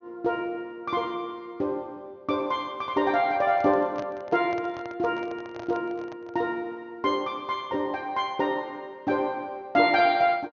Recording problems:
treble missing; nothing above 6.4 kHz
handling noise; from 3.5 to 6.5 s; peak -7 dB vs average level

